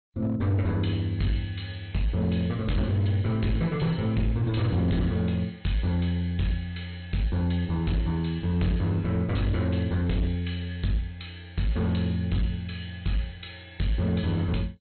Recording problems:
codec artefacts; MP2, log-spectral distance 3 dB, nothing above 4.2 kHz
distorted audio; hard clipping, signal-to-distortion ratio 11 dB

